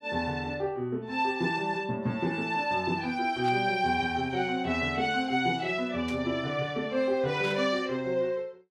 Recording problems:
burst of static; at 3.5 s, at 6 s and at 7.5 s; peak -10 dB vs average level

